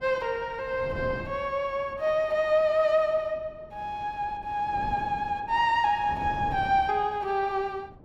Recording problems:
wind on the microphone; below 390 Hz, SNR 16 dB

